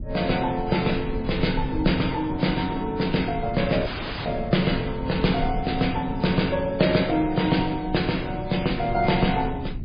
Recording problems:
codec artefacts; MP3, log-spectral distance 5 dB, nothing above 4.8 kHz
low-frequency rumble; below 130 Hz, SNR 12 dB
audio cutting out; at 4 s

